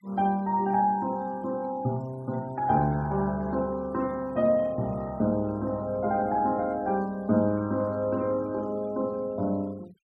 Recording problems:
denoising artefacts; signal-to-artefact ratio 28 dB

